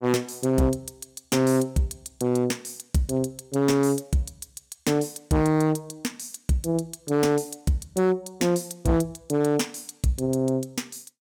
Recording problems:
distortion; hard clipping, signal-to-distortion ratio 12 dB

